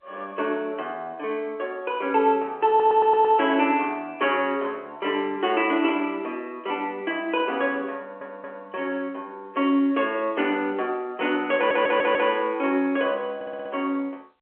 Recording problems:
telephone audio; 300 Hz to 3.3 kHz, G.711
audio stuttering; 4 times, first at 2.5 s

